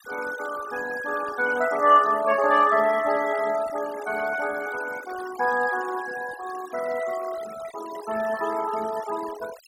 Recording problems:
noise reduction artefacts; signal-to-artefact ratio 15 dB

